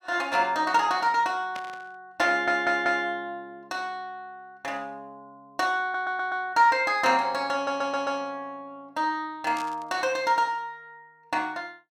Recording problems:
static burst; at 1.5 s and at 9.5 s; peak -9 dB vs average level
stutter; at 2.5 s, at 6 s and at 7.5 s

